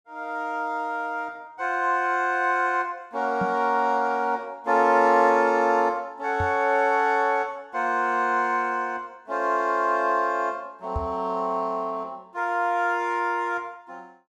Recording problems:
microphone thump; at 3.5 s, at 6.5 s and at 11 s; peak -2 dB vs average level

